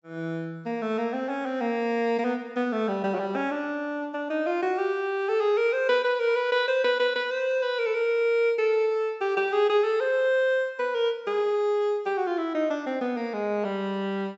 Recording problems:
treble missing; nothing above 8 kHz

